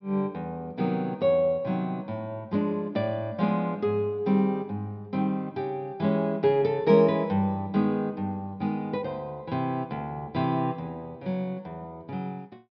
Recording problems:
low-pass filter; nothing above 5.5 kHz

